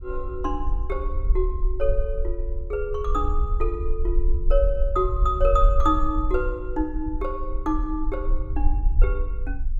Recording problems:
rumble; below 48 Hz, SNR 0 dB

